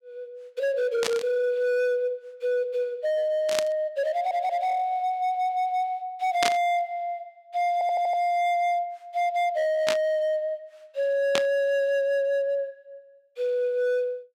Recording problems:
distorted audio; hard clipping, signal-to-distortion ratio 12 dB
static burst; 5 times, first at 1 s; peak +4 dB vs average level
stutter; at 4 s, at 5 s and at 7.5 s

